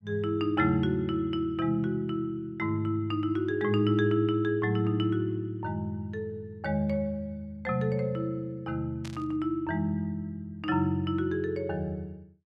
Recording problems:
static burst; at 9 s; peak -11 dB vs average level

